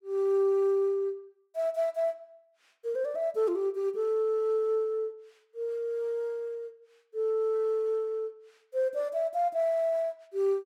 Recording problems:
none

